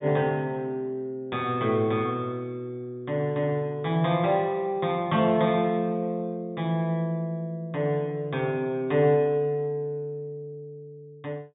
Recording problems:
treble missing; nothing above 4 kHz

